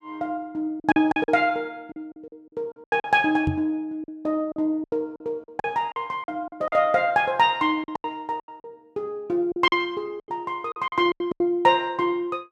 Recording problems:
packet loss; 12% of the sound replaced, filled with silence
knock on the microphone; at 3.5 s; peak +2 dB vs average level

